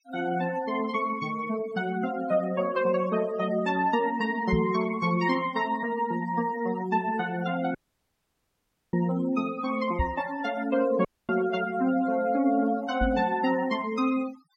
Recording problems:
noise reduction artefacts; signal-to-artefact ratio 18 dB
knock on the microphone; at 4.5 s, at 10 s and at 13 s; peak +3 dB vs average level
dropout; at 8 s for 1 s and at 11 s

